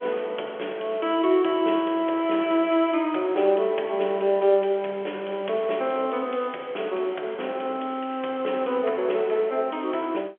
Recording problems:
telephone audio; 280 Hz to 3.4 kHz, G.711

